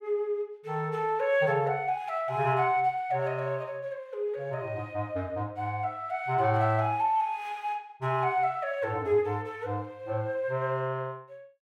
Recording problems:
none

